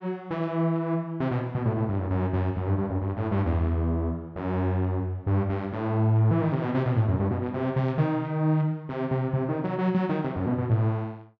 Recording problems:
none

